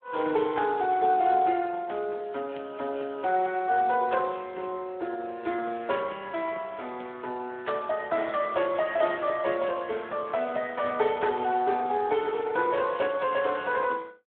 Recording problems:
phone line; 260 Hz to 3.7 kHz, Speex

